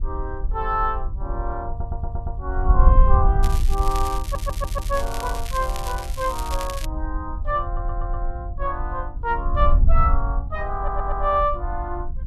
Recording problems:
wind noise; below 56 Hz, SNR -1 dB
audio stuttering; 4 times, first at 1.5 s
crackling; from 3.5 to 7 s; loose cable, SNR 10 dB

